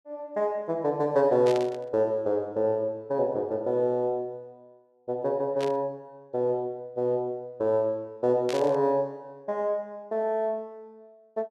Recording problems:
static burst; at 1.5 s, at 5.5 s and at 8.5 s; peak -5 dB vs average level

